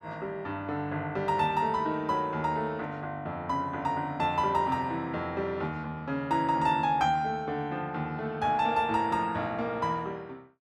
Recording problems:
none

